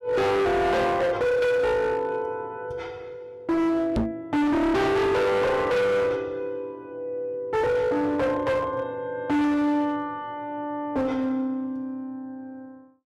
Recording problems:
distorted audio; hard clipping, signal-to-distortion ratio 6 dB
knock on the microphone; at 4 s; peak +3 dB vs average level

